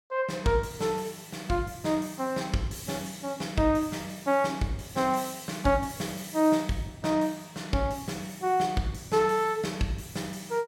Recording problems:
none

